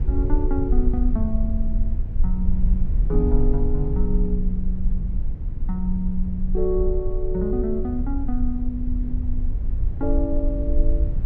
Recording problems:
rumble; below 52 Hz, strongest tone 22 Hz, SNR -2 dB

